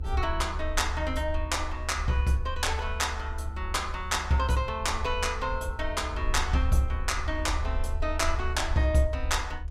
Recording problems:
rumble; below 72 Hz, SNR 5 dB

